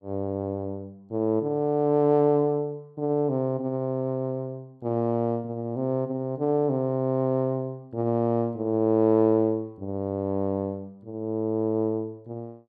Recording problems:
none

